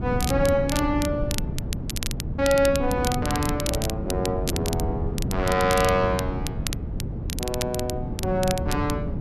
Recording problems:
wind noise; below 190 Hz, SNR 5 dB
crackling; vinyl, SNR 9 dB

